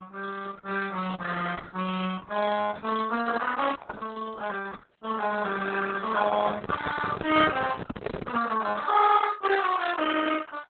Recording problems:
codec artefacts; Opus, then Opus, log-spectral distance 5 dB
microphone handling noise; from 6.5 to 8.5 s; peak +2 dB vs average level

